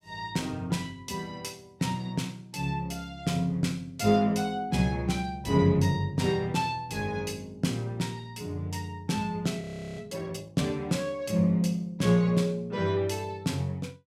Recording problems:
audio freezing; at 9.5 s

